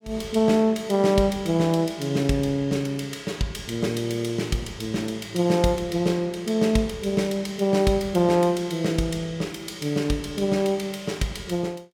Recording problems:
none

